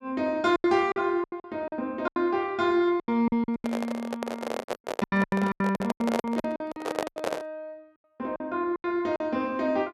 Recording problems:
lost packets; 15% of the sound replaced, filled with silence
handling noise; from 3.5 to 7.5 s; peak +3 dB vs average level

